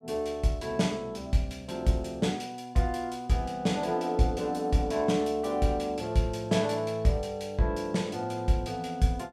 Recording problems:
none

